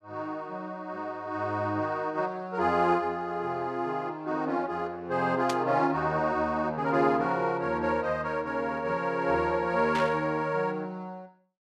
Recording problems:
burst of static; at 5.5 s and at 10 s; peak -2 dB vs average level

